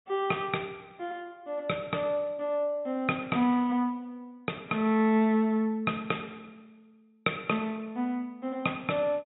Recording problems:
treble cut off; nothing above 4 kHz

